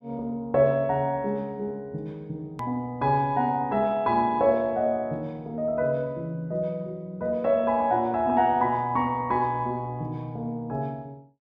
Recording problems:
click at an edit; at 2.5 s

